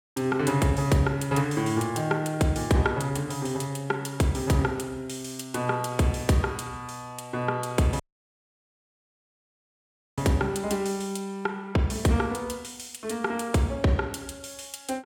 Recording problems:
dropout; at 8 s for 2 s

